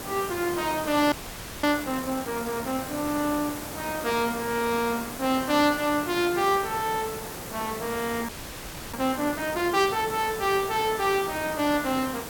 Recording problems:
hiss; slope -4 dB per octave, SNR 9 dB
frozen audio; at 1 s for 0.5 s and at 8.5 s for 0.5 s

